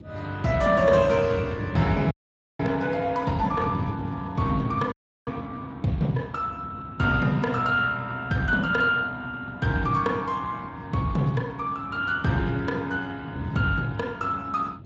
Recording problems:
lossy compression; Speex, log-spectral distance 3 dB
wind noise; below 250 Hz, SNR 12 dB
frozen audio; at 2 s and at 5 s

